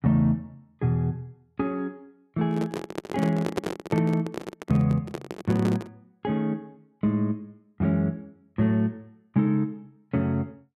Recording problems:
handling noise; from 2.5 to 6 s; peak +4 dB vs average level

